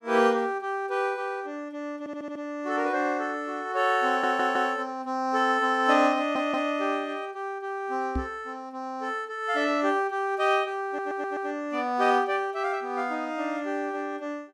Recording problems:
stutter; 4 times, first at 2 s
knock on the microphone; at 8 s; peak +1 dB vs average level

